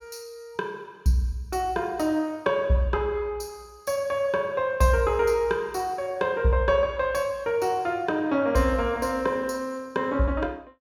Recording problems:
none

